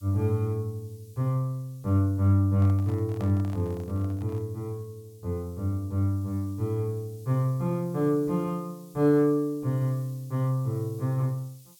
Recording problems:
hiss; SNR 28 dB
handling noise; from 2.5 to 4.5 s; peak -11 dB vs average level

